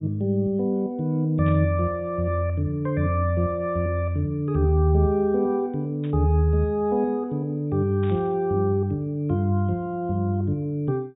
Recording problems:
treble cut off; nothing above 4 kHz
static burst; at 1.5 s, at 6 s and at 8 s; peak -17 dB vs average level

